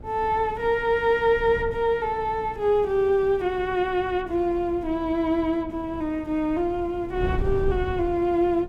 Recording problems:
hum; 60 Hz, harmonics up to 1.4 kHz, SNR 25 dB
wind on the microphone; below 120 Hz, SNR 14 dB

